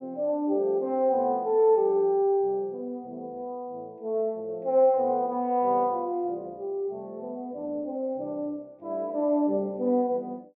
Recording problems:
none

